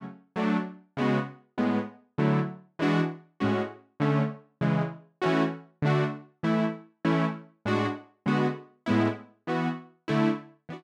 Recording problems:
none

